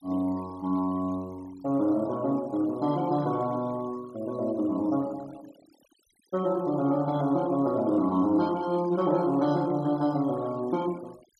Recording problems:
denoising artefacts; signal-to-artefact ratio 23 dB

